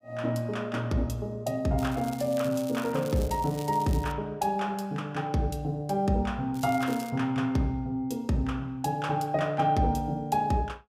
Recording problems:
crackle; from 2 to 4 s and at 6.5 s; loose cable, SNR 18 dB

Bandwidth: 15.5 kHz